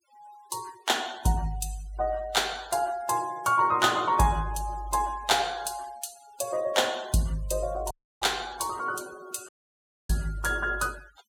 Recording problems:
denoising artefacts; signal-to-artefact ratio 20 dB
audio cutting out; at 8 s and at 9.5 s for 0.5 s

